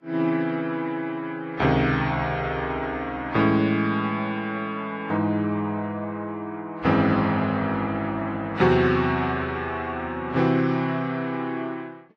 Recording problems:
codec artefacts; AAC, then Vorbis, log-spectral distance 2 dB

